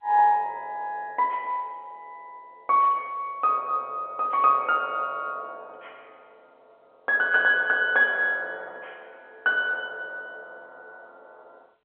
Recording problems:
telephone audio; 280 Hz to 3.3 kHz, G.711

